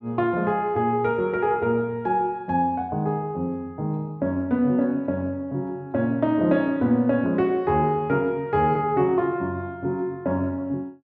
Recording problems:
none

